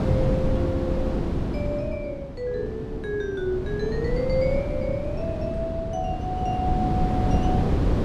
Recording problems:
wind on the microphone; below 290 Hz, SNR -1 dB

